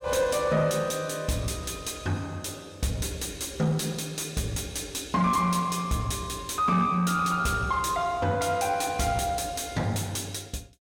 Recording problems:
distorted audio; soft clipping, signal-to-distortion ratio 12 dB

